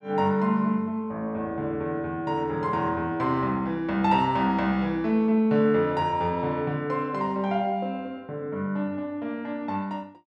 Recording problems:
none

